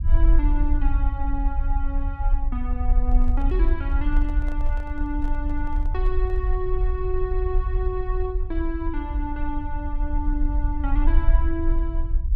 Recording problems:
low-frequency rumble; below 50 Hz, SNR -6 dB
handling noise; from 3 to 6.5 s; peak -9 dB vs average level

